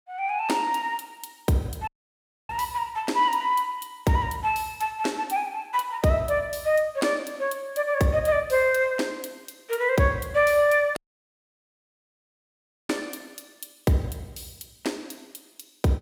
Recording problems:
dropout; at 2 s for 0.5 s and at 11 s for 2 s

